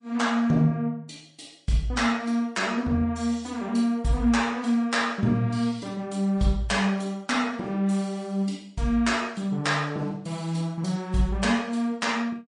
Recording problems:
lossy compression; MP3, log-spectral distance 2 dB, nothing above 8.5 kHz

